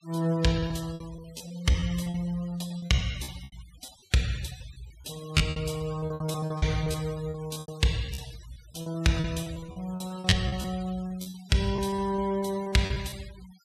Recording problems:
denoising artefacts; signal-to-artefact ratio 18 dB
lost packets; 16% of the sound replaced, filled with repeated pitch periods

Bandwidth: 14.5 kHz